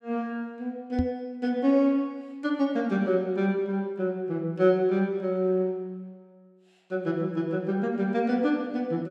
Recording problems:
microphone bump; at 1 s; peak +2 dB vs average level

